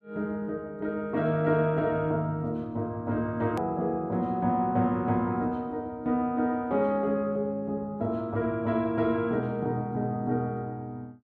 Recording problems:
click at an edit; at 3.5 s

